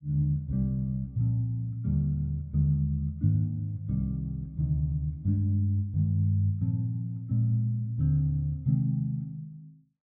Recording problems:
none

